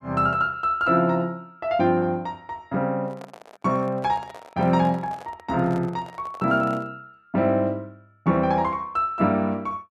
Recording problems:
handling noise; from 3 to 7 s; peak -11 dB vs average level

